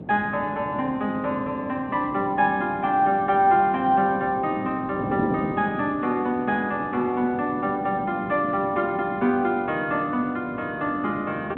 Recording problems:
phone line; 280 Hz to 3.3 kHz, G.726
wind on the microphone; below 350 Hz, SNR 12 dB

